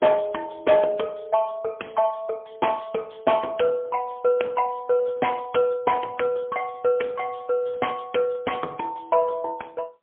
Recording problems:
telephone audio; 300 Hz to 3.4 kHz, AMR-NB, then MP3

